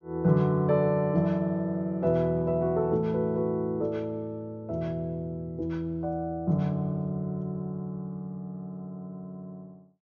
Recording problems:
low-pass filter; nothing above 6.6 kHz

